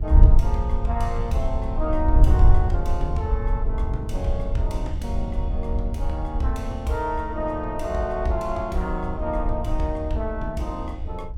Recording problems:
wind noise; below 68 Hz, SNR -2 dB

